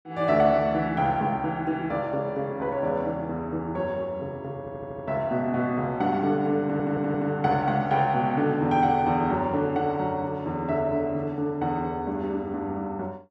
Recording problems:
stutter; at 4.5 s and at 6.5 s

